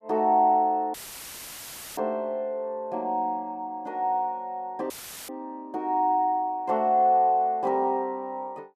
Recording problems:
audio cutting out; at 1 s for 1 s and at 5 s; filled with static

